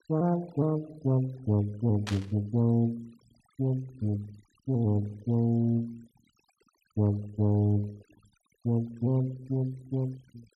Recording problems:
denoising artefacts; signal-to-artefact ratio 28 dB
static burst; at 2 s; peak -3 dB vs average level

